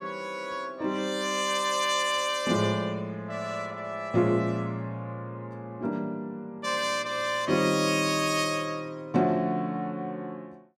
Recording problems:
none

